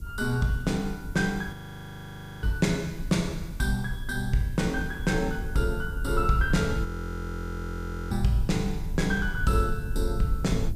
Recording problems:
hiss; SNR 27 dB
low-frequency rumble; below 80 Hz, SNR 7 dB
frozen audio; at 1.5 s for 1 s and at 7 s for 1.5 s

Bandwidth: 15 kHz